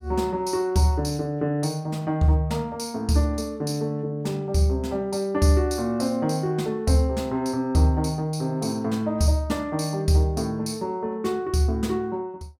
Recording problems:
none

